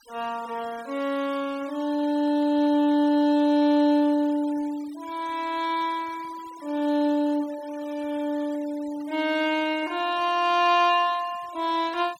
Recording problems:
denoising artefacts; signal-to-artefact ratio 23 dB

